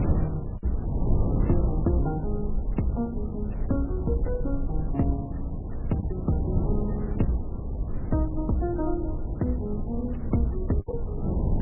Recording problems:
lossy codec; MP3, log-spectral distance 2 dB, nothing above 11.3 kHz
rumble; below 58 Hz, SNR 8 dB
wind on the microphone; below 190 Hz, SNR 2 dB
lost packets; 1.8% of the sound replaced, filled with the last packet

